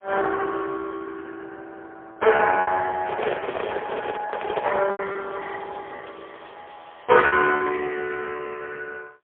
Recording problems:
phone line; 340 Hz to 2.5 kHz, AMR-NB, then MP3
lost packets; 4% of the sound replaced, filled with repeated pitch periods
handling noise; from 3 to 5 s; peak +3 dB vs average level
crackle; from 5 to 7.5 s; loose cable, SNR 27 dB

